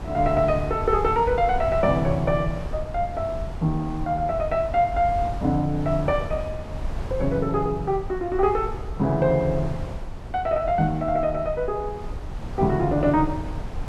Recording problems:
wind on the microphone; below 130 Hz, SNR 10 dB

